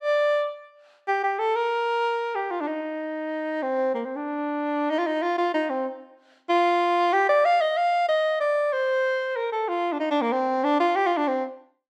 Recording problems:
none

